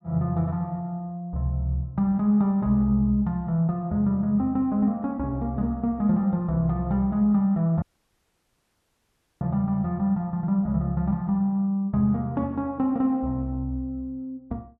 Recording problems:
audio cutting out; at 8 s for 1.5 s

